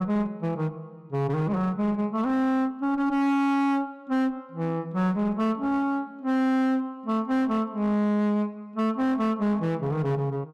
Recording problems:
distorted audio; hard clipping, uneven, signal-to-distortion ratio 10 dB

